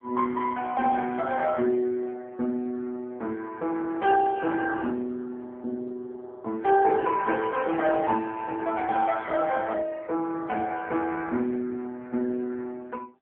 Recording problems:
telephone audio; 190 Hz to 2.2 kHz, AMR-NB

